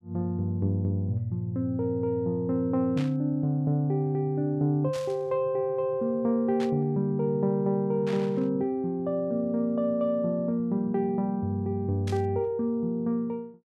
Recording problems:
burst of static; 5 times, first at 3 s; peak -9 dB vs average level

